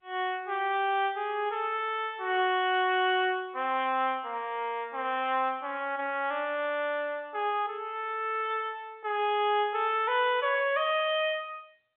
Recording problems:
phone line; 280 Hz to 3.6 kHz, G.711

